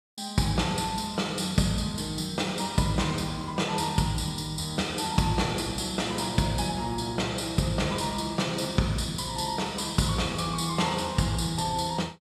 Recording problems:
none

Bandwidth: 14.5 kHz